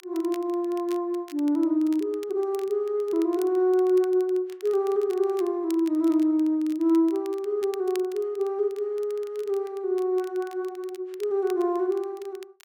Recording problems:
crackling; vinyl, SNR 25 dB

